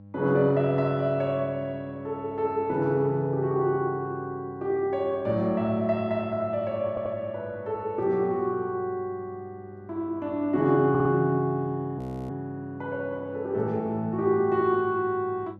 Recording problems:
electrical hum; 50 Hz, harmonics up to 800 Hz, SNR 20 dB
stutter; at 7 s and at 11 s
frozen audio; at 12 s

